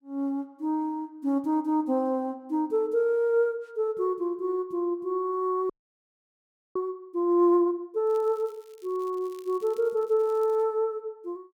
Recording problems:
audio freezing; at 5.5 s for 1 s
crackle; from 8 to 11 s; loose cable, SNR 30 dB

